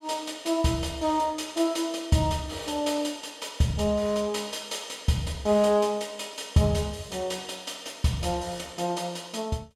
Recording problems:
none

